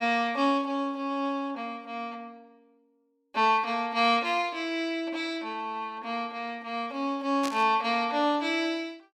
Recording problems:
burst of static; at 7.5 s; peak -3 dB vs average level

